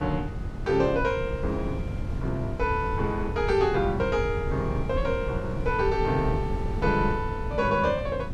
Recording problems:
wind on the microphone; below 150 Hz, SNR 6 dB

